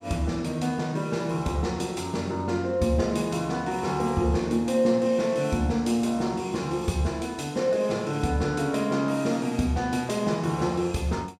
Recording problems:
none

